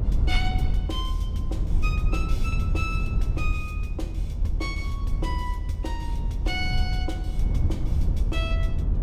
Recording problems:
low-frequency rumble; below 78 Hz, SNR -6 dB

